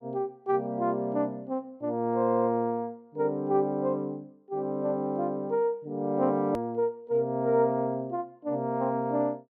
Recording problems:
hard cut with a click; at 6.5 s

